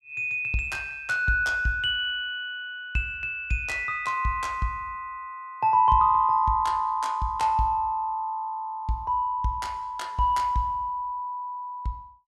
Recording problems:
none

